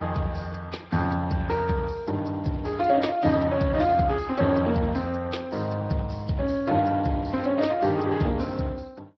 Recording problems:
lossy codec; Vorbis, then Speex, log-spectral distance 5 dB

